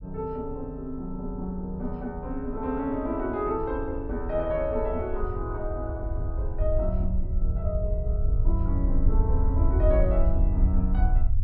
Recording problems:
low-pass filter; nothing above 5.5 kHz
rumble; below 68 Hz, SNR -3 dB

